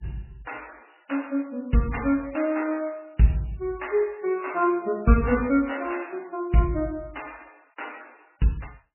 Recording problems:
codec artefacts; MP3, log-spectral distance 5 dB, nothing above 2.4 kHz

